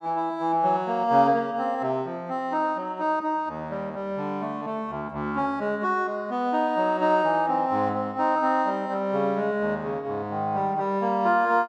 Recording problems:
none

